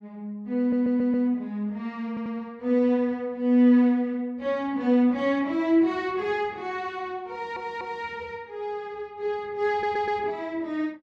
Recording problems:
stutter; 4 times, first at 0.5 s

